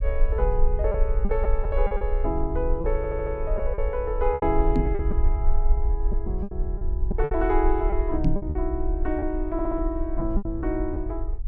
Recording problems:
rumble; below 50 Hz, strongest tone 20 Hz, SNR 0 dB
lost packets; 8% of the sound replaced, filled with repeated pitch periods
stutter; at 3 s and at 9.5 s
microphone thump; at 5 s and at 8 s; peak +7 dB vs average level

